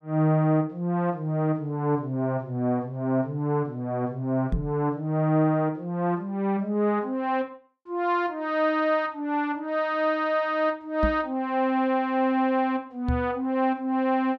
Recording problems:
microphone thump; at 4.5 s, at 11 s and at 13 s; peak +2 dB vs average level

